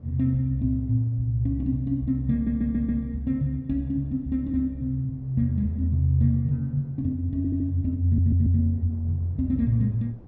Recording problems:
wind noise; below 280 Hz, SNR 26 dB
stutter; at 2.5 s, at 7.5 s and at 8 s

